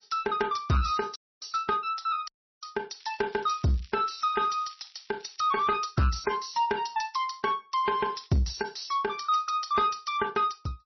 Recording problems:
lossy compression; MP3, log-spectral distance 8 dB, nothing above 5.8 kHz
distorted audio; soft clipping, signal-to-distortion ratio 11 dB
audio cutting out; at 1 s and at 2.5 s
crackling; from 3 to 5.5 s and at 8 s; loose cable, SNR 26 dB

